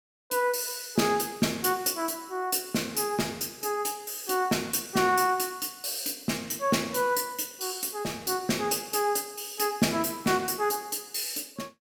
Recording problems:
none

